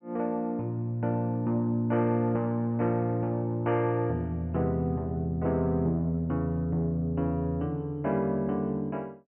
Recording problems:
treble missing; nothing above 3.1 kHz

